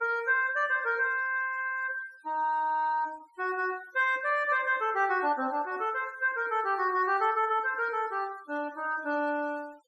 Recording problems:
noise reduction artefacts; signal-to-artefact ratio 26 dB

